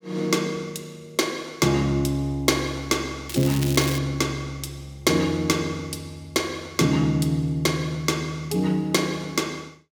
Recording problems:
crackling; at 3.5 s; loose cable, SNR 9 dB

